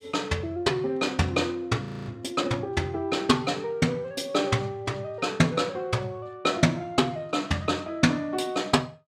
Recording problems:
audio freezing; at 2 s

